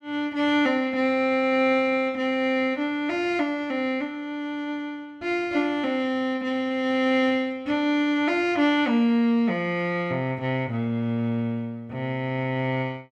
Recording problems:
none

